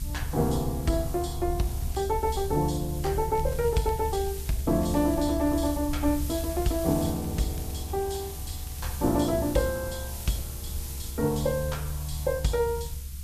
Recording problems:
lossy compression; Vorbis, log-spectral distance 2 dB
hiss; slope +4 dB per octave, SNR 12 dB
low-frequency rumble; below 72 Hz, strongest tone 70 Hz, SNR 7 dB
crackle; at 1.5 s, from 3.5 to 5.5 s and from 6.5 to 9 s; loose cable, SNR 25 dB

